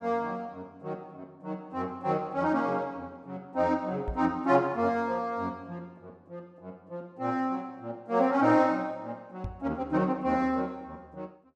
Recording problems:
knock on the microphone; at 4 s and at 9.5 s; peak -3 dB vs average level

